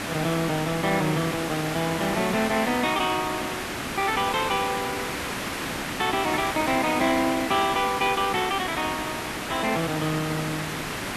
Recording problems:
background hiss; SNR 4 dB

